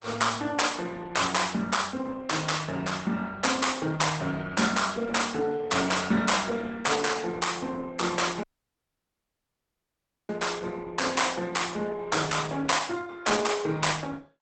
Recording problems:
codec artefacts; Opus, log-spectral distance 6 dB, nothing above 8 kHz
dropout; at 8.5 s for 2 s

